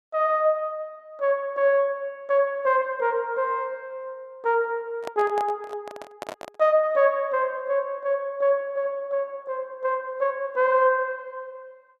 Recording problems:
microphone handling noise; from 5 to 6.5 s; peak -6 dB vs average level

